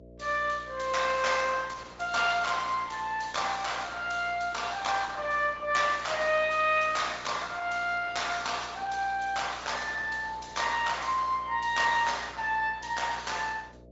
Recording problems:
treble missing; nothing above 7.6 kHz
lossy compression; Opus, log-spectral distance 5 dB
hum; 60 Hz, harmonics up to 660 Hz, SNR 22 dB

